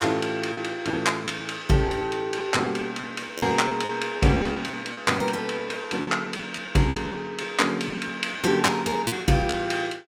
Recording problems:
lost packets; 11% of the sound replaced, filled with repeated pitch periods

